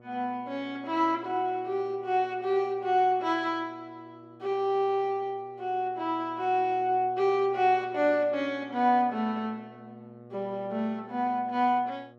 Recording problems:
hum; 60 Hz, harmonics up to 1.3 kHz, SNR 24 dB

